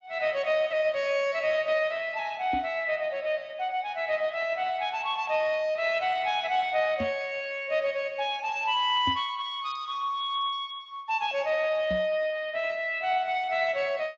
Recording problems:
lossy codec; Speex, log-spectral distance 3 dB
microphone bump; 4 times, first at 2.5 s; peak -3 dB vs average level

